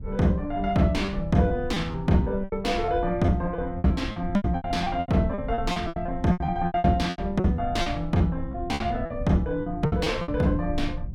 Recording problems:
low-frequency rumble; below 98 Hz, SNR 11 dB
packet loss; 15% of the sound replaced, filled with repeated pitch periods

